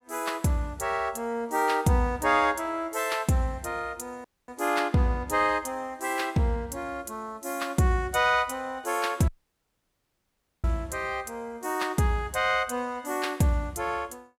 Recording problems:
audio cutting out; at 4.5 s and at 9.5 s for 1.5 s

